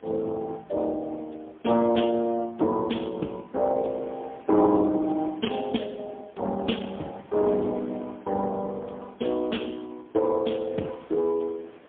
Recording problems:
telephone audio; 170 Hz to 3.4 kHz, AMR-NB, then MP3
wind on the microphone; below 1.3 kHz, SNR 24 dB

